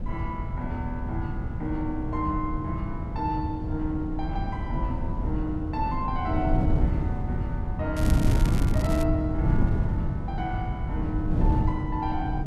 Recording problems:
wind noise; below 140 Hz, SNR -3 dB
crackling; from 8 to 9 s; loose cable, SNR 9 dB

